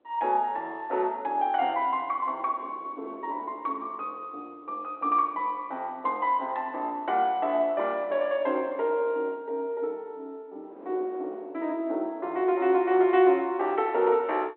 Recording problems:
phone line; 280 Hz to 3.4 kHz, G.726
wind noise; below 580 Hz, SNR 21 dB

